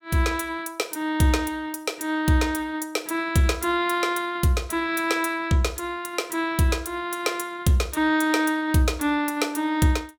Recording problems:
none

